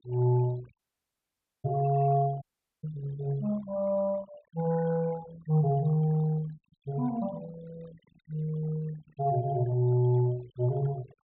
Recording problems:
low-pass filter; nothing above 4 kHz
noise reduction artefacts; signal-to-artefact ratio 23 dB
audio cutting out; at 1 s for 1 s and at 2.5 s

